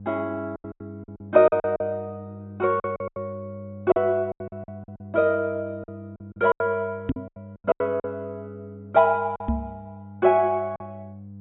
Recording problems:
low-pass filter; nothing above 4 kHz
hum; 50 Hz, harmonics up to 500 Hz, SNR 17 dB
lost packets; 12% of the sound replaced, filled with silence
knock on the microphone; at 7 s and at 9.5 s; peak +3 dB vs average level

